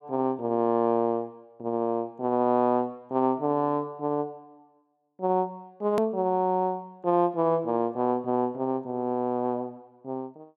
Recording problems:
hard cut with a click; at 6 s

